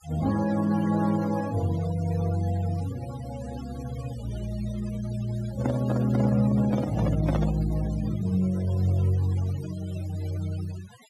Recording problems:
noise reduction artefacts; signal-to-artefact ratio 17 dB
microphone handling noise; from 5.5 to 7.5 s; peak +2 dB vs average level

